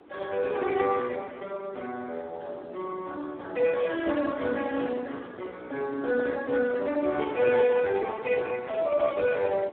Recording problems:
phone line; 260 Hz to 3 kHz, Speex
wind noise; below 640 Hz, SNR 20 dB

